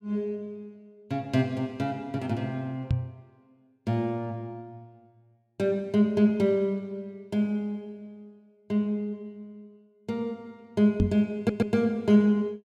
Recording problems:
knock on the microphone; at 3 s and at 11 s; peak +6 dB vs average level
audio stuttering; at 11 s

